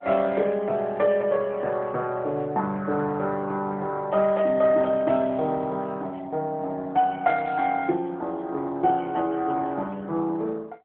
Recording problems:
phone line; 220 Hz to 3.6 kHz, AMR-NB

